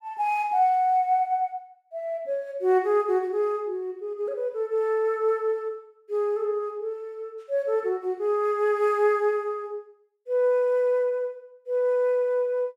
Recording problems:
none

